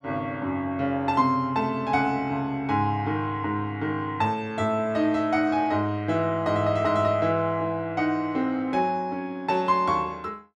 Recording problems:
none

